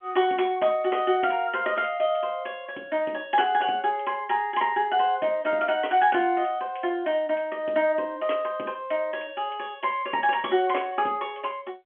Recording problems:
telephone audio; 240 Hz to 3.3 kHz, G.711

